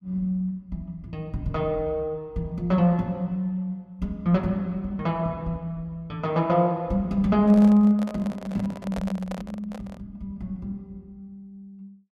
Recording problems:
handling noise; from 7.5 to 10 s; peak -6 dB vs average level

